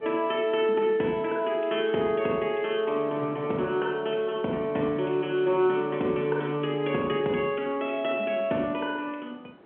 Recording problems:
telephone audio; 220 Hz to 3.3 kHz, G.711
wind noise; below 740 Hz, SNR 23 dB

